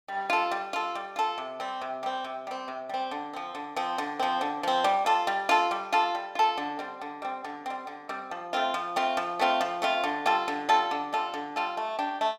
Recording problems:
none

